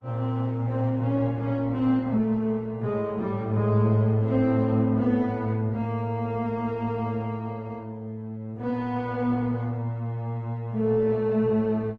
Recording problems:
lossy compression; Opus, log-spectral distance 2 dB

